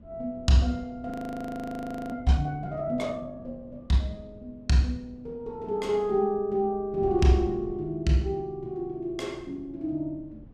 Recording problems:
wind noise; below 230 Hz, SNR 19 dB
frozen audio; at 1 s for 1 s

